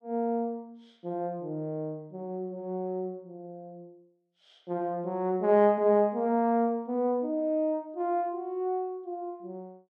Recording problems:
none

